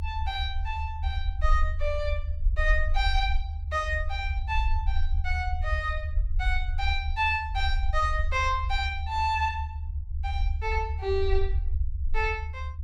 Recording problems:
rumble; below 74 Hz, SNR 1 dB

